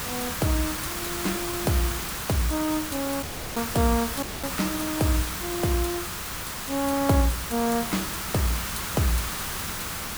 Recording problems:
hiss; SNR 2 dB
audio cutting out; at 3 s and at 4 s

